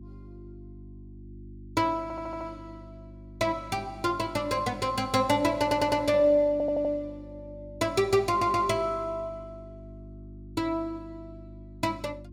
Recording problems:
mains hum; 50 Hz, harmonics up to 350 Hz, SNR 19 dB
audio stuttering; 4 times, first at 2 s

